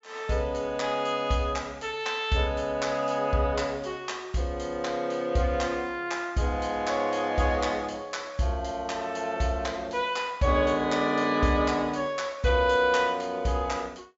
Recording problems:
treble cut off; nothing above 8 kHz

